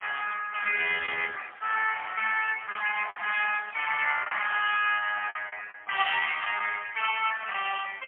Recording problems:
phone line; 430 Hz to 3.3 kHz, AMR-NB, then MP3
packet loss; 4% of the sound replaced, filled with the last packet

